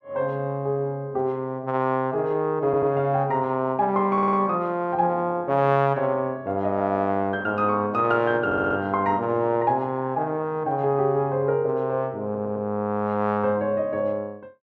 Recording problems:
audio stuttering; 4 times, first at 2.5 s

